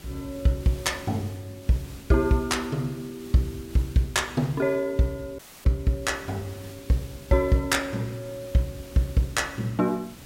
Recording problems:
background hiss; SNR 19 dB
dropout; at 5.5 s

